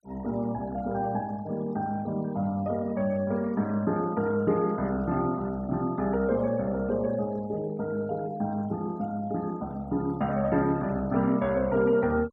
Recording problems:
noise reduction artefacts; signal-to-artefact ratio 23 dB

